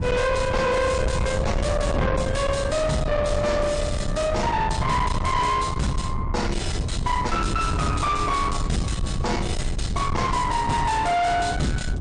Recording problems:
codec artefacts; MP3, log-spectral distance 2 dB, nothing above 9.5 kHz
distorted audio; soft clipping, signal-to-distortion ratio 6 dB
rumble; below 520 Hz, SNR 4 dB
wind noise; below 550 Hz, SNR 13 dB

